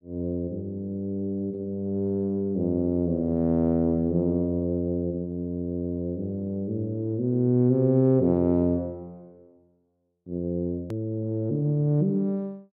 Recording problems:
hard cut with a click; at 11 s

